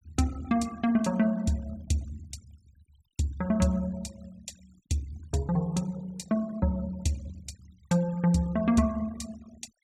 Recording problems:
noise reduction artefacts; signal-to-artefact ratio 25 dB

